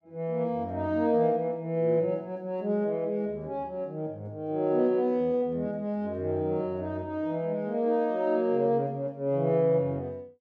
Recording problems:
none

